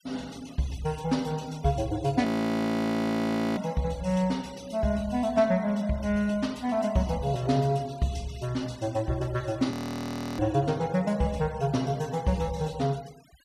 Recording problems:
denoising artefacts; signal-to-artefact ratio 22 dB
audio freezing; at 2.5 s for 1.5 s and at 9.5 s for 0.5 s

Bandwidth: 14.5 kHz